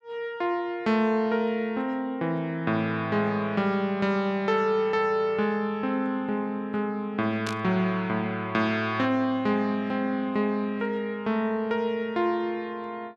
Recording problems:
static burst; at 7.5 s; peak -3 dB vs average level

